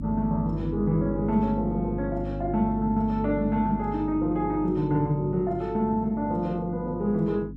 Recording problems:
hum; 50 Hz, harmonics up to 300 Hz, SNR 8 dB

